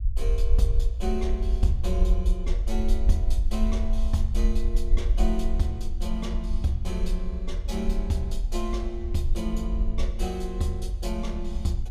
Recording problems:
low-frequency rumble; below 52 Hz, SNR -3 dB

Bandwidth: 14.5 kHz